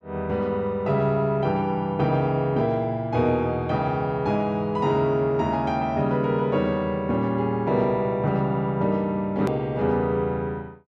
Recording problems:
hard cut with a click; at 9.5 s

